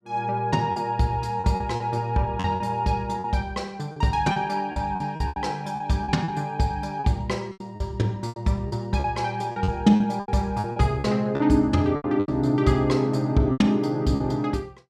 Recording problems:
packet loss; 11% of the sound replaced, filled with repeated pitch periods

